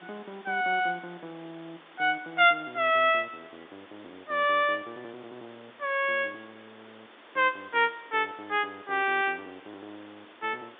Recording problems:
phone line; 240 Hz to 3.7 kHz, G.711
background hiss; SNR 24 dB

